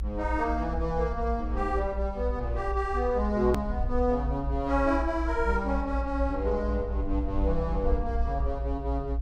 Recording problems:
rumble; below 60 Hz, strongest tone 56 Hz, SNR 3 dB
edit click; at 3.5 s

